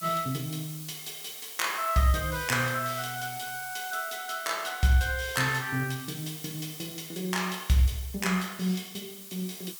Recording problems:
hiss; SNR 11 dB

